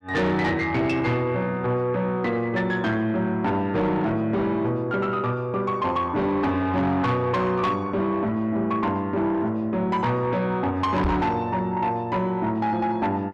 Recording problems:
distortion; soft clipping, signal-to-distortion ratio 10 dB
microphone thump; at 11 s; peak +2 dB vs average level

